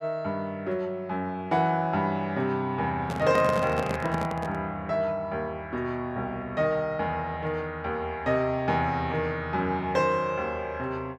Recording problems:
microphone handling noise; from 3 to 4.5 s; peak +2 dB vs average level

